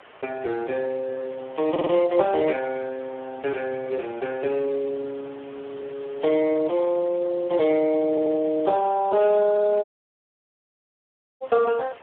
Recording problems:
telephone audio; 320 Hz to 2.5 kHz, Speex
background hiss; SNR 23 dB
stutter; at 1.5 s and at 8 s
dropout; at 10 s for 1.5 s

